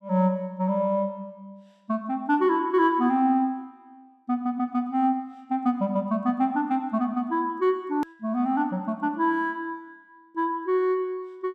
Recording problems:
hard cut with a click; at 8 s

